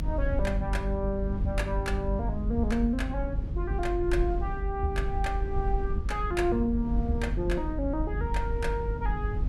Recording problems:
hum; 50 Hz, harmonics up to 300 Hz, SNR 6 dB
low-frequency rumble; below 66 Hz, strongest tone 44 Hz, SNR 3 dB
wind noise; below 200 Hz, SNR 15 dB

